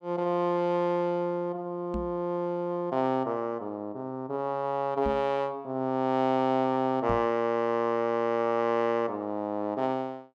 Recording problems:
knock on the microphone; at 2 s, at 5 s and at 7 s; peak -3 dB vs average level

